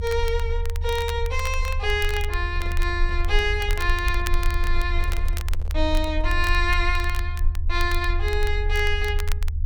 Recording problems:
rumble; below 76 Hz, strongest tone 28 Hz, SNR 1 dB
crackle; vinyl, SNR 14 dB
microphone handling noise; from 2.5 to 6.5 s; peak -12 dB vs average level

